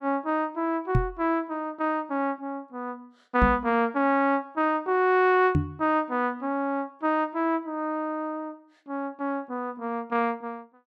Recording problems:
microphone thump; at 1 s, at 3.5 s and at 5.5 s; peak +7 dB vs average level

